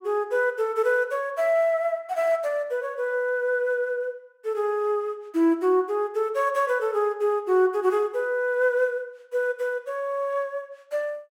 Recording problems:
none

